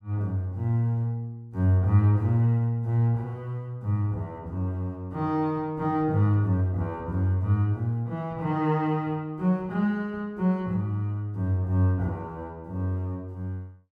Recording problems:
none

